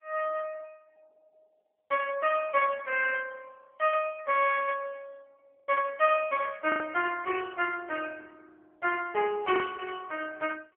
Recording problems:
telephone audio; 340 Hz to 3 kHz, AMR-NB
packet loss; 1.4% of the sound replaced, filled with the last packet

